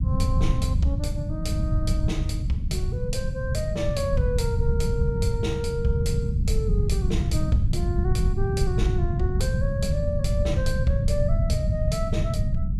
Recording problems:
rumble; below 130 Hz, SNR -5 dB

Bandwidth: 15 kHz